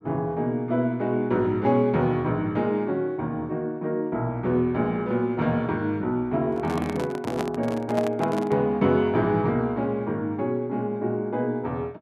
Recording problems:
microphone handling noise; from 6.5 to 8.5 s; peak 0 dB vs average level

